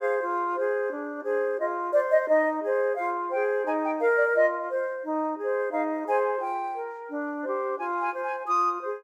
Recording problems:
none

